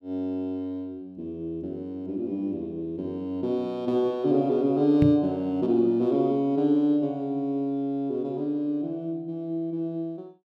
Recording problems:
microphone thump; at 5 s; peak +5 dB vs average level

